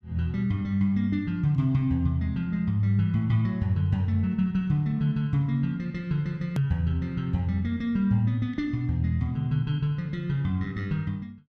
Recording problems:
click at an edit; at 6.5 s

